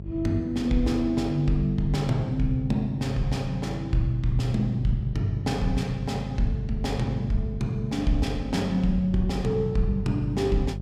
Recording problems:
mains hum; 50 Hz, harmonics up to 600 Hz, SNR 9 dB

